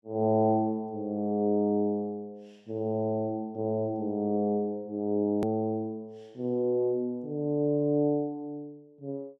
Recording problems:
click at an edit; at 5.5 s

